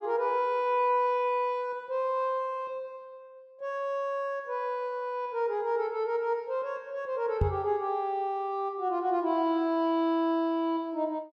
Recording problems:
microphone thump; at 7.5 s; peak +6 dB vs average level

